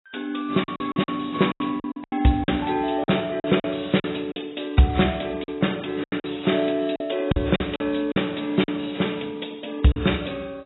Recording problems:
lossy codec; AAC, log-spectral distance 8 dB, nothing above 3.9 kHz
lost packets; 10% of the sound replaced, filled with silence

